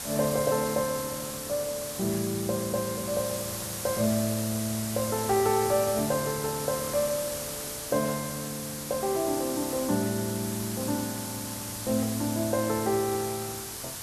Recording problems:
background hiss; slope -1 dB per octave, SNR 5 dB

